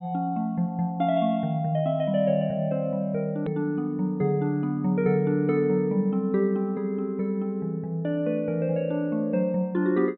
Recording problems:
treble cut off; nothing above 4 kHz
edit click; at 3.5 s

